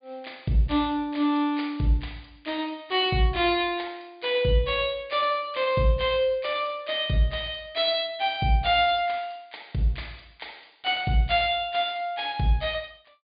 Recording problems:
treble missing; nothing above 4.8 kHz

